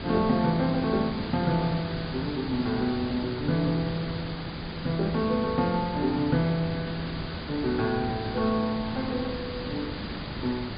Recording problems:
treble cut off; nothing above 4.9 kHz
background hiss; SNR 7 dB

